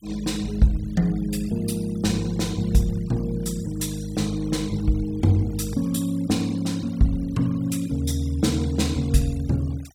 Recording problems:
noise reduction artefacts; signal-to-artefact ratio 22 dB

